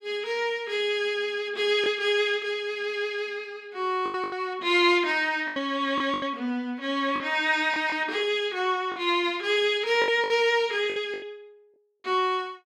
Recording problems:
packet loss; 6% of the sound replaced, filled with the last packet

